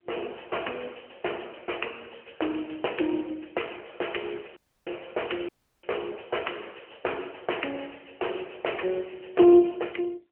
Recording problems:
telephone audio; 300 Hz to 3.1 kHz, AMR-NB
audio cutting out; at 4.5 s and at 5.5 s

